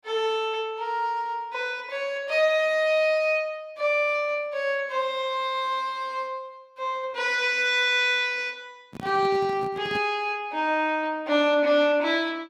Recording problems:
handling noise; from 9 to 10 s; peak -8 dB vs average level

